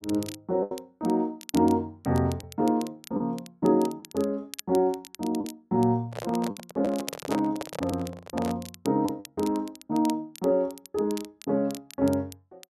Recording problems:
crackling; vinyl, SNR 17 dB
lost packets; 4% of the sound replaced, filled with the last packet
handling noise; from 6 to 8.5 s; peak 0 dB vs average level

